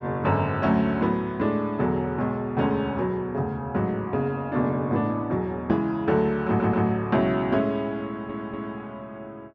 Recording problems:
audio stuttering; at 6.5 s and at 8 s

